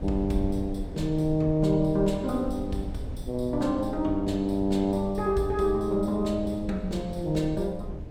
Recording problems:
wind noise; below 130 Hz, SNR 11 dB

